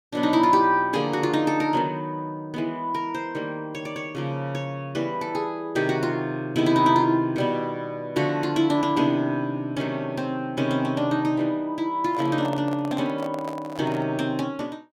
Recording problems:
microphone handling noise; from 12 to 14 s; peak -6 dB vs average level

